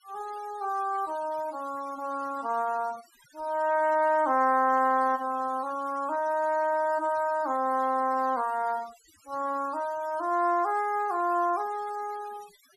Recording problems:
noise reduction artefacts; signal-to-artefact ratio 23 dB

